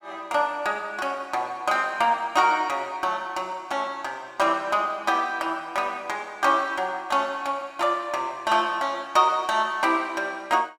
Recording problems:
none

